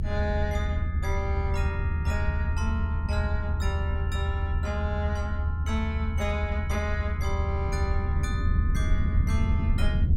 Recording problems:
rumble; below 82 Hz, SNR -6 dB

